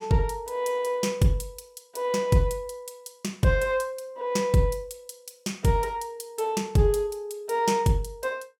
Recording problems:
none

